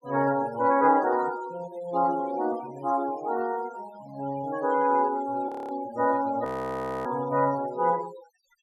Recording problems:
noise reduction artefacts; signal-to-artefact ratio 19 dB
frozen audio; at 5.5 s and at 6.5 s for 0.5 s

